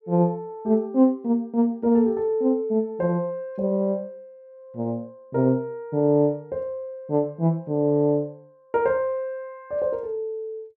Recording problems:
none

